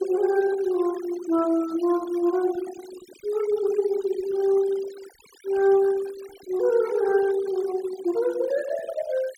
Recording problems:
noise reduction artefacts; signal-to-artefact ratio 20 dB

